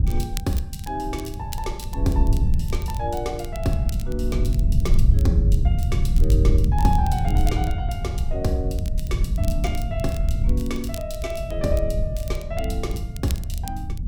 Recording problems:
wind noise; below 88 Hz, SNR -5 dB
crackle; vinyl, SNR 14 dB

